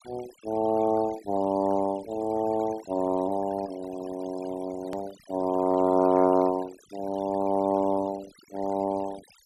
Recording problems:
denoising artefacts; signal-to-artefact ratio 20 dB
click at an edit; at 5 s

